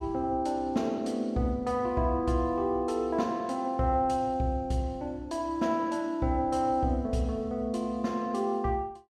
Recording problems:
none

